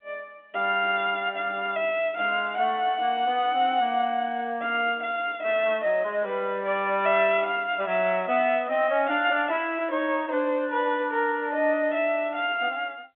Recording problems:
phone line; 320 Hz to 3.6 kHz, G.711

